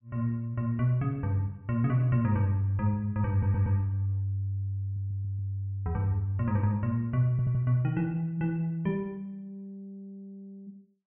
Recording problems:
treble cut off; nothing above 3.1 kHz
audio stuttering; at 3.5 s, at 5 s and at 7.5 s

